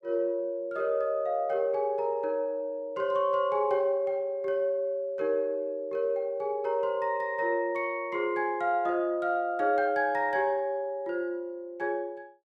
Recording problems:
none

